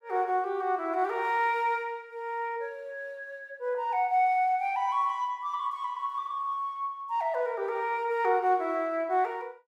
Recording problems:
none

